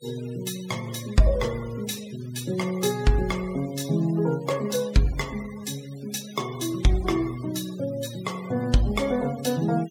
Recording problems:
denoising artefacts; signal-to-artefact ratio 18 dB

